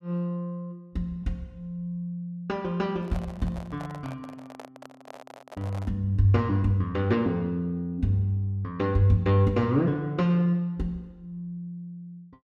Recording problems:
handling noise; from 3 to 6 s; peak -10 dB vs average level

